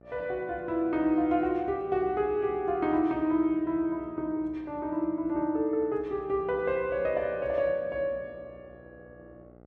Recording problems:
mains hum; 60 Hz, harmonics up to 1.5 kHz, SNR 26 dB

